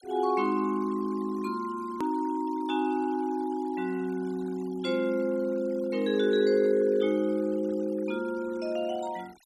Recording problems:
noise reduction artefacts; signal-to-artefact ratio 24 dB
click at an edit; at 2 s

